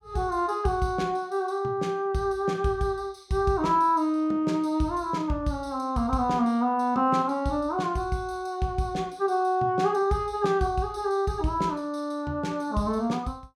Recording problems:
none

